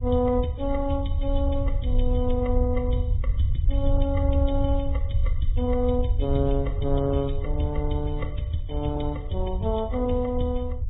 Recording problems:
lossy codec; AAC, then Vorbis, log-spectral distance 2 dB, nothing above 3.6 kHz
low-frequency rumble; below 76 Hz, SNR 0 dB

